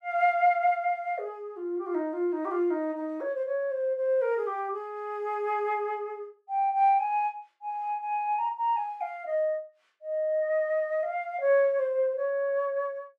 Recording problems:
none

